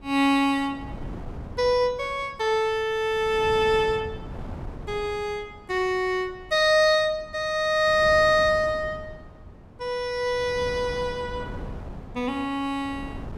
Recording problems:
wind noise; below 320 Hz, SNR 17 dB

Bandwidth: 16 kHz